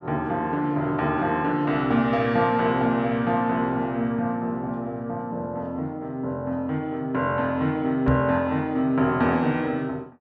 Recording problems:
treble cut off; nothing above 8 kHz
microphone bump; at 8 s; peak +3 dB vs average level

